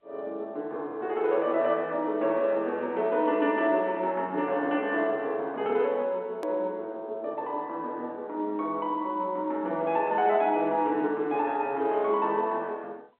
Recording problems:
telephone audio; 260 Hz to 3.6 kHz, G.711
hard cut with a click; at 6.5 s

